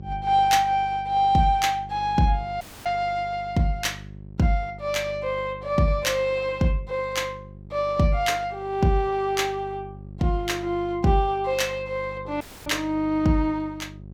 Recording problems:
electrical hum; 50 Hz, harmonics up to 550 Hz, SNR 18 dB
audio cutting out; at 2.5 s and at 12 s

